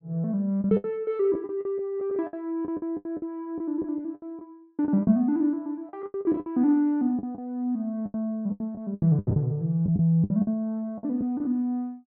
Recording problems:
packet loss; 14% of the sound replaced, filled with the last packet

